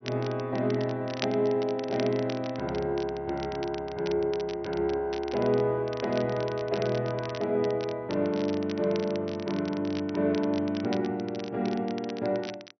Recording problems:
low-pass filter; nothing above 5.9 kHz
crackling; vinyl, SNR 16 dB

